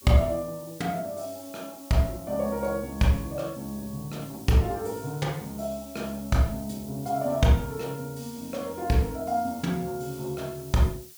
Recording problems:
hiss; slope +3 dB per octave, SNR 17 dB

